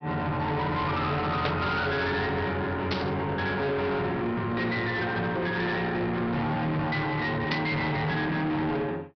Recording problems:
treble missing; nothing above 5.5 kHz
distorted audio; soft clipping, signal-to-distortion ratio 8 dB
static burst; at 1.5 s, at 3 s and at 7.5 s; peak +2 dB vs average level

